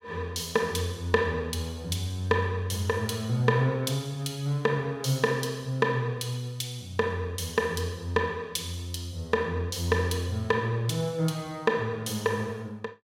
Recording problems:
none

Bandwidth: 16 kHz